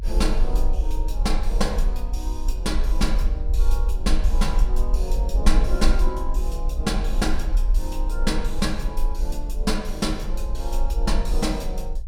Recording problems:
rumble; below 44 Hz, strongest tone 22 Hz, SNR -3 dB

